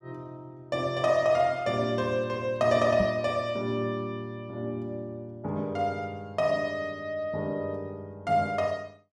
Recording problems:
knock on the microphone; at 3 s; peak +2 dB vs average level

